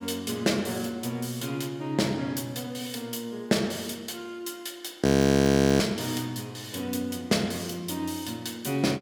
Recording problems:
frozen audio; at 5 s for 1 s

